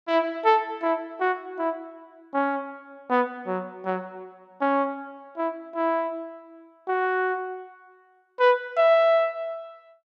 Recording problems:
none

